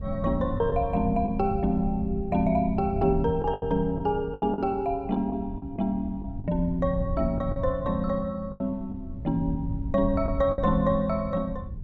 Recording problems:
wind on the microphone; below 110 Hz, SNR 8 dB
lost packets; 6% of the sound replaced, filled with the last packet

